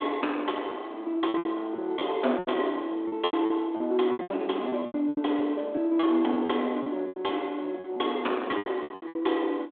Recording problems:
phone line; 220 Hz to 3.6 kHz, G.726
distortion; soft clipping, signal-to-distortion ratio 11 dB
lost packets; 14% of the sound replaced, filled with repeated pitch periods

